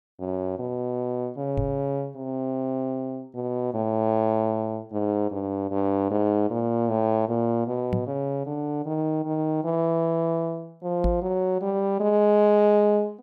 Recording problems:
knock on the microphone; at 1.5 s, at 8 s and at 11 s; peak +3 dB vs average level

